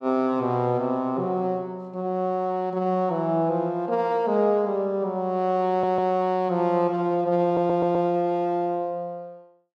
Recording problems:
stutter; at 5.5 s and at 7.5 s

